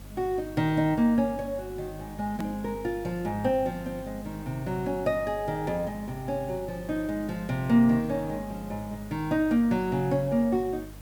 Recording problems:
mains hum; 50 Hz, harmonics up to 300 Hz, SNR 17 dB
background hiss; slope -4 dB per octave, SNR 23 dB
click at an edit; at 2.5 s

